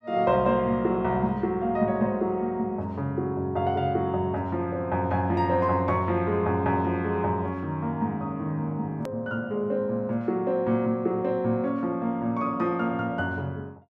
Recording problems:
hard cut with a click; at 9 s

